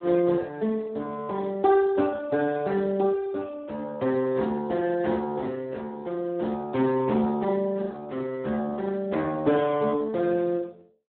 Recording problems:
phone line; 130 Hz to 2 kHz, Speex

